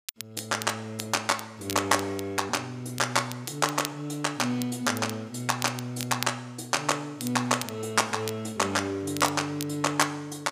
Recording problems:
crackling; vinyl, SNR 11 dB

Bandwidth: 15 kHz